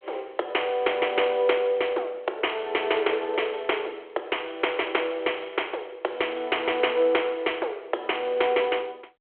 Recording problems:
phone line; 320 Hz to 3.3 kHz, G.726

